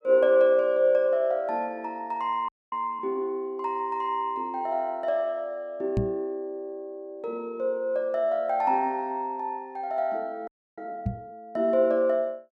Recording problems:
frozen audio; at 2.5 s and at 10 s
microphone bump; at 6 s and at 11 s; peak +3 dB vs average level

